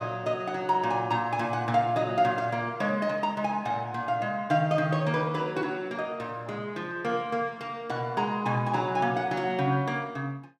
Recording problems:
none

